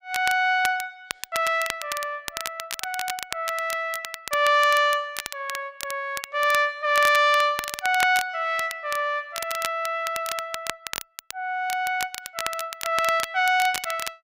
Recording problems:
crackling; vinyl, SNR 10 dB

